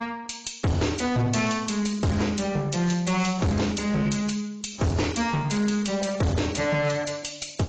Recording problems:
lossy compression; AAC, log-spectral distance 6 dB, nothing above 7.6 kHz
distorted audio; hard clipping, uneven, signal-to-distortion ratio 6 dB

